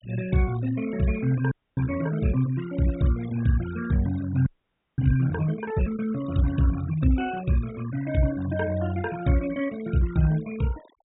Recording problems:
treble cut off; nothing above 4 kHz
denoising artefacts; signal-to-artefact ratio 17 dB
audio freezing; at 1.5 s and at 4.5 s for 0.5 s

